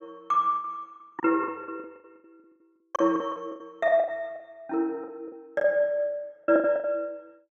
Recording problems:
packet loss; 17% of the sound replaced, filled with the last packet

